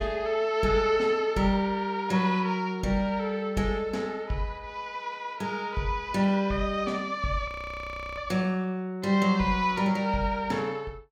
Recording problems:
frozen audio; at 7.5 s for 0.5 s

